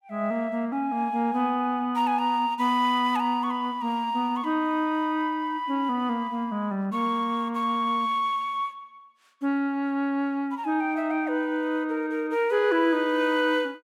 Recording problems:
none

